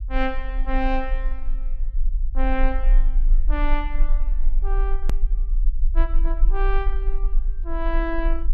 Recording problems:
low-frequency rumble; below 34 Hz, strongest tone 26 Hz, SNR -5 dB
edit click; at 5 s

